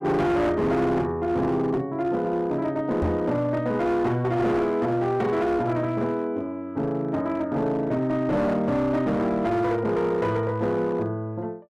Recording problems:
distortion; hard clipping, signal-to-distortion ratio 10 dB
microphone bump; at 3 s; peak +4 dB vs average level

